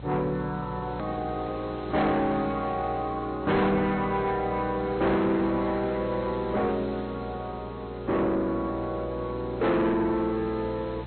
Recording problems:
low-pass filter; nothing above 4.1 kHz
codec artefacts; AAC, log-spectral distance 7 dB
distorted audio; soft clipping, signal-to-distortion ratio 7 dB
electrical hum; 60 Hz, harmonics up to 840 Hz, SNR 14 dB
background hiss; SNR 20 dB
hard cut with a click; at 1 s

